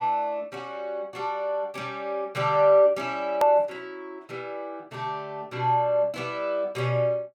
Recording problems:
hard cut with a click; at 3.5 s

